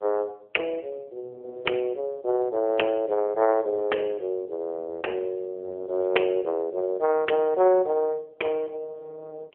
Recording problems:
telephone audio; 320 Hz to 3.2 kHz, AMR-NB

